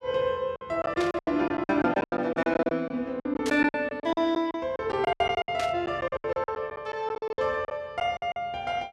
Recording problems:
lost packets; 18% of the sound replaced, filled with silence
static burst; at 1 s, at 3.5 s and at 5.5 s; peak -3 dB vs average level

